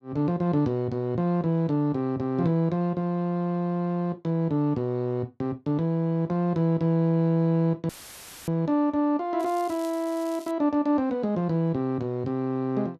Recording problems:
dropout; at 8 s for 0.5 s; filled with static
crackle; from 9.5 to 11 s; loose cable, SNR 22 dB

